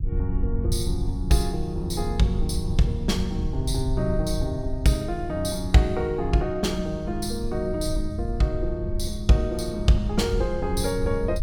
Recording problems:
low-frequency rumble; below 84 Hz, SNR 5 dB

